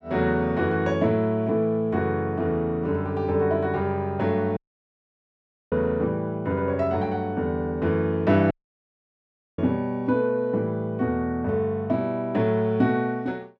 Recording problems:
audio cutting out; at 4.5 s for 1 s and at 8.5 s for 1 s

